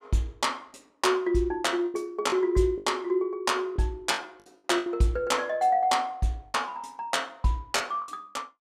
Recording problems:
packet loss; 6% of the sound replaced, filled with the last packet

